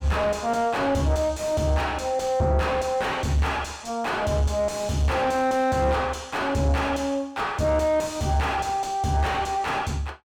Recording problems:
distorted audio; soft clipping, signal-to-distortion ratio 6 dB

